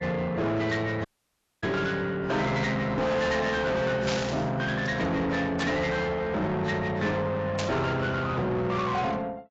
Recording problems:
codec artefacts; AAC, log-spectral distance 2 dB, nothing above 7.3 kHz
distortion; soft clipping, signal-to-distortion ratio 8 dB
dropout; at 1 s for 0.5 s
static burst; at 4 s, at 5.5 s and at 7.5 s; peak -1 dB vs average level

